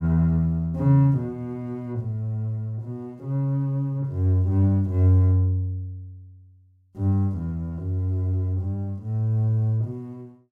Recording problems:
none

